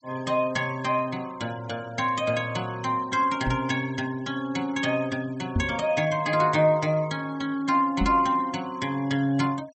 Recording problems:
treble cut off; nothing above 7.9 kHz
denoising artefacts; signal-to-artefact ratio 21 dB
microphone thump; at 3.5 s, at 5.5 s and at 8 s; peak +3 dB vs average level

